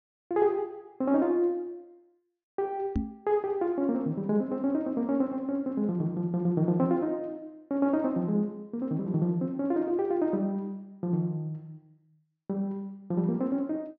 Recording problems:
treble missing; nothing above 6.5 kHz
knock on the microphone; at 3 s; peak +4 dB vs average level

